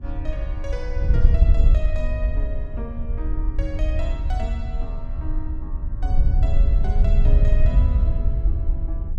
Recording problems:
wind on the microphone; below 62 Hz, SNR -12 dB

